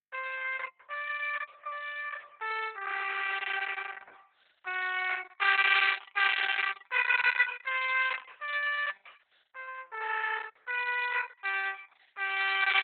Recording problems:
lossy compression; Opus, log-spectral distance 6 dB, nothing above 3.7 kHz

